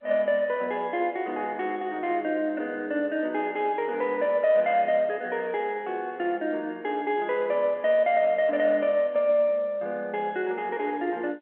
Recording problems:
telephone audio; 260 Hz to 3.5 kHz, G.711

